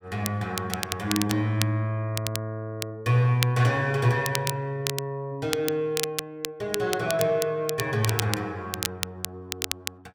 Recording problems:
crackle; vinyl, SNR 6 dB

